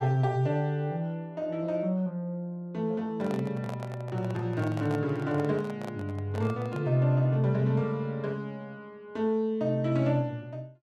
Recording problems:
microphone handling noise; from 3 to 7 s; peak -6 dB vs average level

